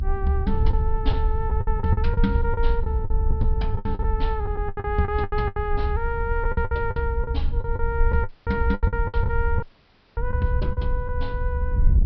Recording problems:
treble cut off; nothing above 5.5 kHz
low-frequency rumble; below 72 Hz, SNR 3 dB
wind noise; below 70 Hz, SNR 0 dB
lost packets; 13% of the sound replaced, filled with the last packet
dropout; at 8.5 s and at 9.5 s for 0.5 s

